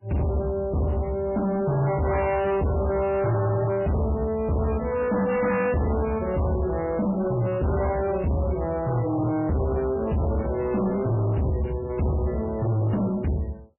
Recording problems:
codec artefacts; MP3, log-spectral distance 4 dB, nothing above 2.4 kHz
distorted audio; soft clipping, signal-to-distortion ratio 7 dB

